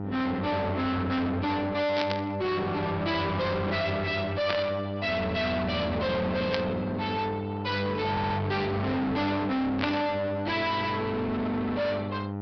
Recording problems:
low-pass filter; nothing above 5.5 kHz
distorted audio; soft clipping, signal-to-distortion ratio 6 dB
hum; 50 Hz, harmonics up to 1 kHz, SNR 6 dB
static burst; 4 times, first at 2 s; peak +1 dB vs average level
stutter; at 8 s

